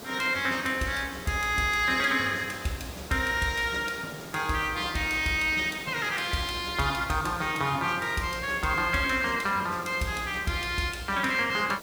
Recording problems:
hiss; SNR 16 dB

